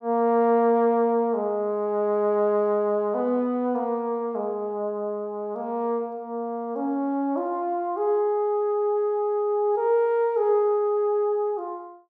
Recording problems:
none

